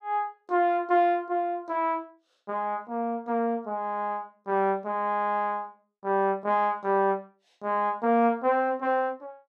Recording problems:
none

